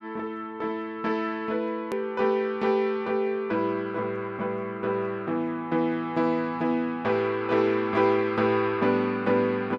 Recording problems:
click at an edit; at 2 s

